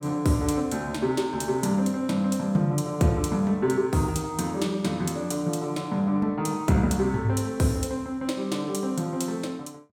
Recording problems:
none

